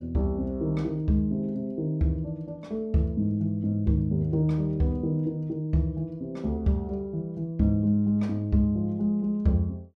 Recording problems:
none

